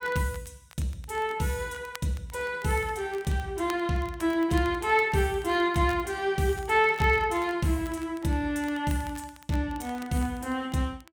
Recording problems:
crackling; vinyl, SNR 22 dB

